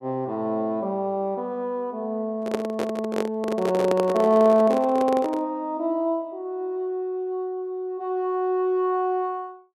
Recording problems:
handling noise; from 2.5 to 5.5 s; peak +2 dB vs average level

